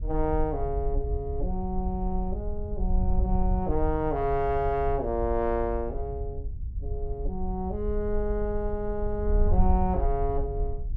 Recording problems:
wind noise; below 64 Hz, SNR 2 dB

